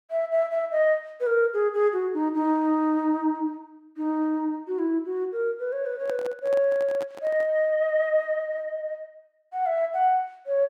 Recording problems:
handling noise; from 6 to 7.5 s; peak -9 dB vs average level

